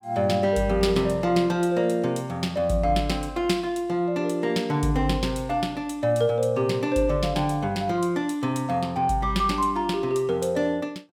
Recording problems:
none

